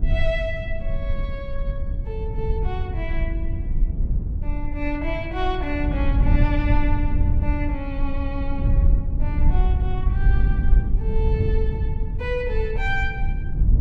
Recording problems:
low-frequency rumble; below 72 Hz, SNR -5 dB

